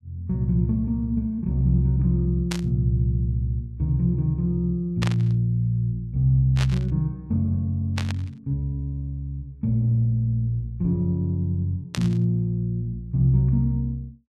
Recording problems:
burst of static; 5 times, first at 2.5 s; peak -2 dB vs average level

